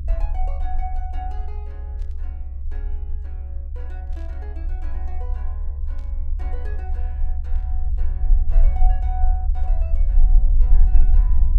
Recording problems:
rumble; below 44 Hz, strongest tone 20 Hz, SNR -17 dB
static burst; 4 times, first at 2 s; peak -11 dB vs average level

